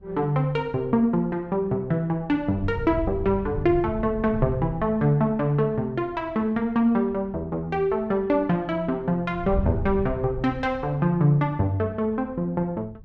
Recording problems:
wind noise; below 110 Hz, SNR 10 dB

